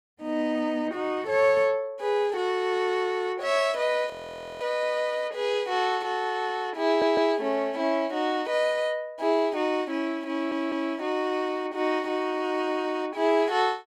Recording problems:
frozen audio; at 4 s for 0.5 s
audio stuttering; at 7 s and at 10 s

